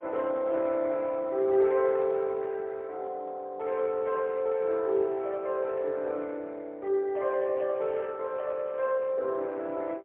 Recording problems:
telephone audio; 300 Hz to 2.6 kHz, AMR-NB, then MP3

